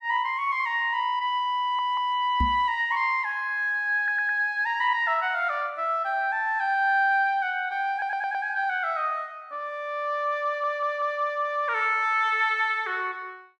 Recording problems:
stutter; 4 times, first at 1.5 s
microphone bump; at 2.5 s; peak +1 dB vs average level

